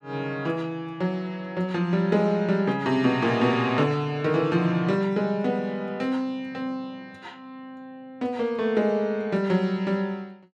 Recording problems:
none

